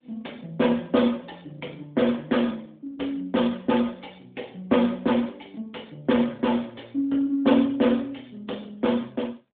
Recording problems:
telephone audio; 190 Hz to 3.7 kHz, AMR-NB

